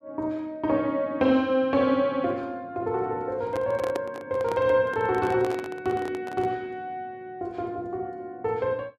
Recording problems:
handling noise; from 3.5 to 6.5 s; peak -2 dB vs average level

